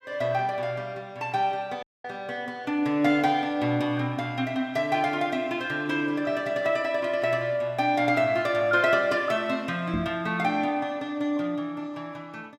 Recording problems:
audio cutting out; at 2 s
knock on the microphone; at 10 s; peak -1 dB vs average level

